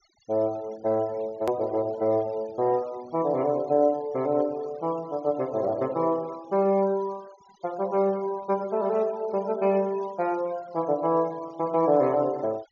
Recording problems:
treble cut off; nothing above 6.9 kHz
noise reduction artefacts; signal-to-artefact ratio 25 dB
edit click; at 1.5 s

